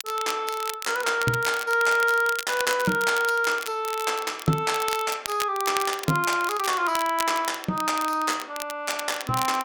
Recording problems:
crackle; vinyl, SNR 10 dB

